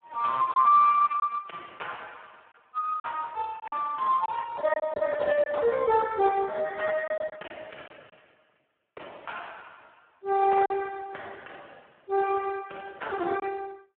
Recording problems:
telephone audio; 220 Hz to 3.2 kHz, Speex
packet loss; 3% of the sound replaced, filled with silence

